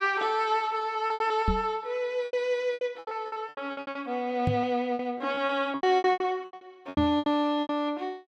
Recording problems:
lost packets; 18% of the sound replaced, filled with repeated pitch periods
microphone thump; at 1.5 s, at 4.5 s and at 7 s; peak +4 dB vs average level

